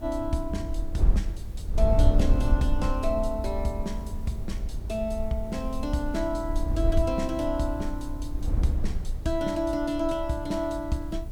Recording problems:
background hiss; slope 0 dB per octave, SNR 28 dB
wind noise; below 64 Hz, SNR 1 dB

